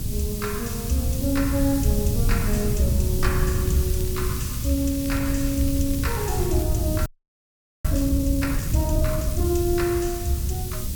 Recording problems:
hum; 60 Hz, harmonics up to 1.1 kHz, SNR 17 dB
background hiss; slope +6 dB per octave, SNR 7 dB
wind on the microphone; below 110 Hz, SNR 1 dB
crackle; from 3.5 to 6.5 s; loose cable, SNR 18 dB
frozen audio; at 7 s for 1 s

